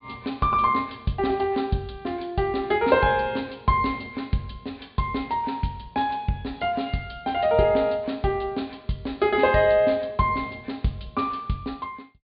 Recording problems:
treble missing; nothing above 4.7 kHz

